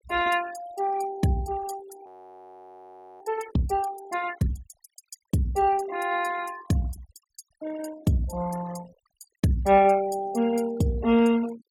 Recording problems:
noise reduction artefacts; signal-to-artefact ratio 20 dB
audio freezing; at 2 s for 1 s

